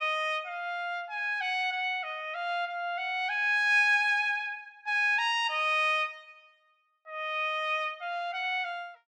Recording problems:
none

